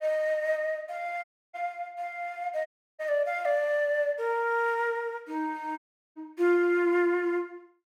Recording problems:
audio cutting out; at 1 s, at 2.5 s and at 6 s

